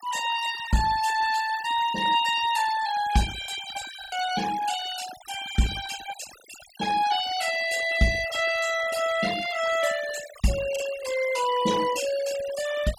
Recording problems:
noise reduction artefacts; signal-to-artefact ratio 13 dB
lost packets; 1.3% of the sound replaced, filled with the last packet

